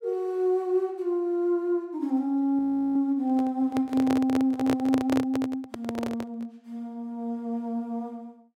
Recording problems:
audio freezing; at 2.5 s
microphone handling noise; from 3.5 to 6.5 s; peak +1 dB vs average level

